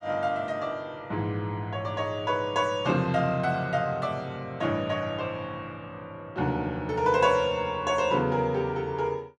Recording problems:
none

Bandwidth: 12 kHz